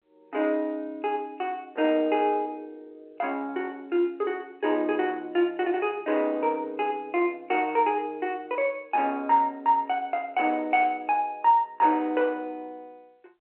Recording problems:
telephone audio; 280 Hz to 3.3 kHz, G.711

